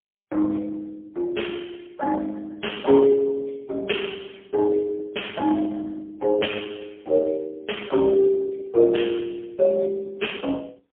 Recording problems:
telephone audio; 260 Hz to 3.3 kHz, AMR-NB, then MP3

